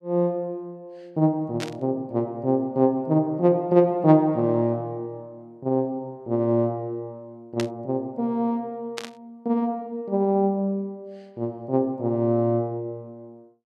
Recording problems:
burst of static; at 1.5 s, at 7.5 s and at 9 s; peak -4 dB vs average level

